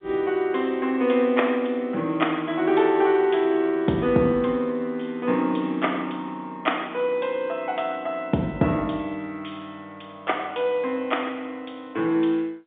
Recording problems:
phone line; 170 Hz to 3.6 kHz, G.711

